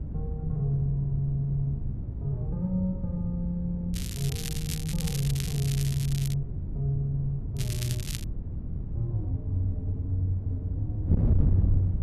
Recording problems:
wind on the microphone; below 140 Hz, SNR 2 dB
crackling; from 4 to 6.5 s and at 7.5 s; loose cable, SNR 7 dB

